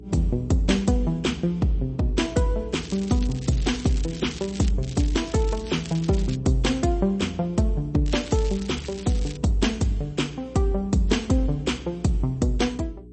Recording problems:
codec artefacts; MP3, then MP2, log-spectral distance 4 dB, nothing above 8.2 kHz
hum; 60 Hz, harmonics up to 420 Hz, SNR 18 dB
crackling; from 2.5 to 4.5 s, from 5 to 6.5 s and from 8 to 9.5 s; loose cable, SNR 17 dB

